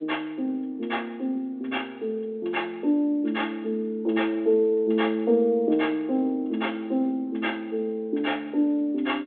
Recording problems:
phone line; 240 Hz to 3.6 kHz, G.726

